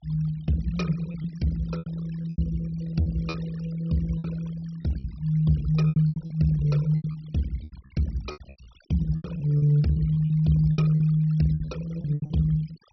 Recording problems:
treble cut off; nothing above 5.9 kHz
denoising artefacts; signal-to-artefact ratio 21 dB
lost packets; 13% of the sound replaced, filled with repeated pitch periods

